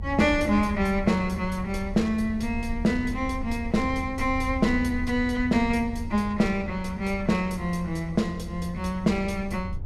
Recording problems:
low-frequency rumble; below 80 Hz, SNR 10 dB

